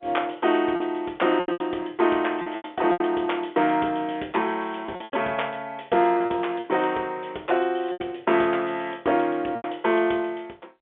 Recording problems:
telephone audio; 240 Hz to 3.6 kHz, G.711
packet loss; 8% of the sound replaced, filled with repeated pitch periods

